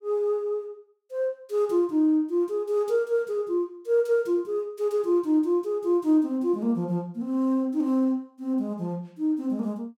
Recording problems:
none

